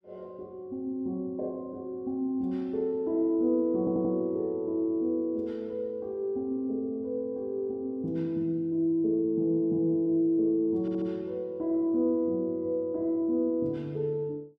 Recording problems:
audio stuttering; at 4 s and at 11 s

